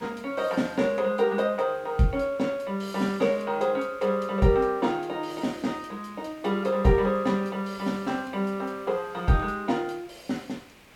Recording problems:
hiss; SNR 24 dB

